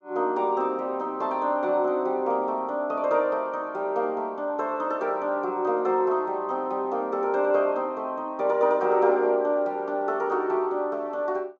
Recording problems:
treble missing; nothing above 8 kHz

